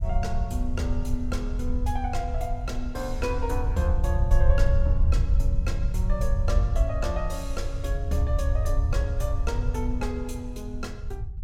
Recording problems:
rumble; below 74 Hz, SNR -5 dB

